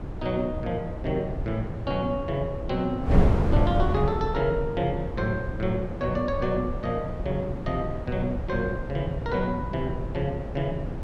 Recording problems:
wind noise; below 200 Hz, SNR 3 dB

